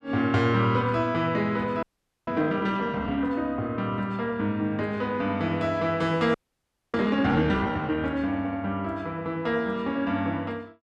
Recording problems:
audio freezing; at 2 s and at 6.5 s for 0.5 s

